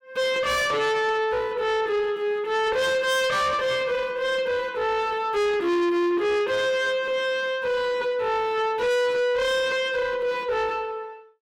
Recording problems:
distortion; soft clipping, signal-to-distortion ratio 7 dB

